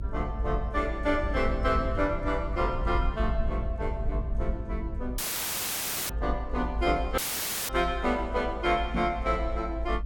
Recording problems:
rumble; below 62 Hz, SNR 4 dB
dropout; at 5 s for 1 s and at 7 s for 0.5 s
microphone thump; at 9 s; peak +2 dB vs average level

